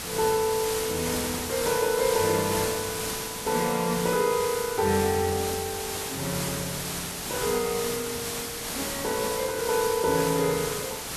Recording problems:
background hiss; slope -1 dB per octave, SNR 3 dB

